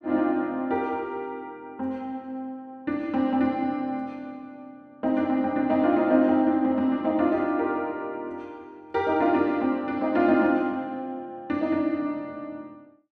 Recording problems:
none

